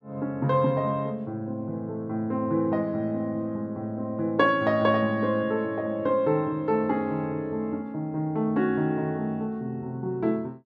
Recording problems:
none

